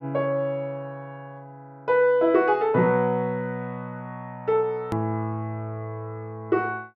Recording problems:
click at an edit; at 5 s

